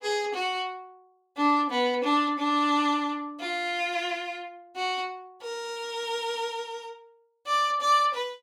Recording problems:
none

